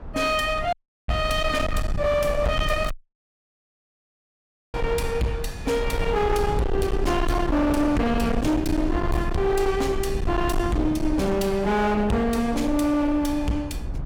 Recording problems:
distortion; hard clipping, signal-to-distortion ratio 8 dB
rumble; below 230 Hz, SNR 6 dB
wind noise; below 1.1 kHz, SNR 21 dB
dropout; at 0.5 s and at 3 s for 2 s
crackle; at 3 s; loose cable, SNR 22 dB

